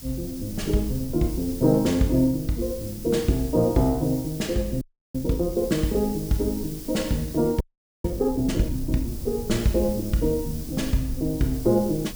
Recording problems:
background hiss; SNR 15 dB
low-frequency rumble; below 110 Hz, SNR 14 dB
audio freezing; at 5 s and at 7.5 s

